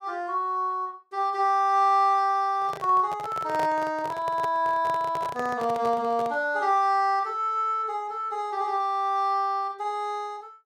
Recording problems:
microphone handling noise; from 2.5 to 6.5 s; peak -6 dB vs average level

